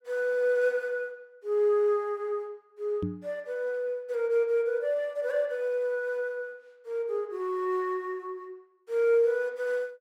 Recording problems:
knock on the microphone; at 3 s; peak +1 dB vs average level

